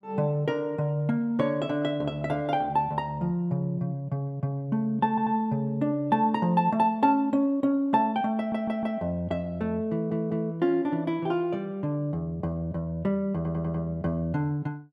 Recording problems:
stutter; 4 times, first at 5 s

